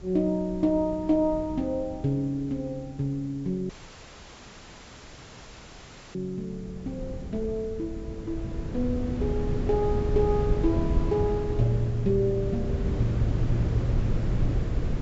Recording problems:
treble missing; nothing above 8 kHz
background hiss; slope -3 dB per octave, SNR 28 dB
wind noise; below 160 Hz, SNR 2 dB
audio cutting out; at 3.5 s for 2.5 s

